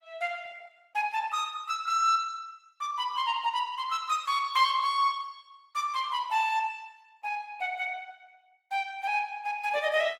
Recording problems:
codec artefacts; Opus, log-spectral distance 3 dB, nothing above 20.1 kHz

